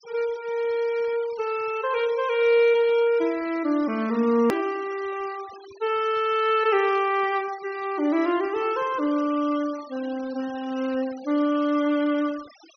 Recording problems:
low-pass filter; nothing above 5.9 kHz
noise reduction artefacts; signal-to-artefact ratio 20 dB
edit click; at 4.5 s

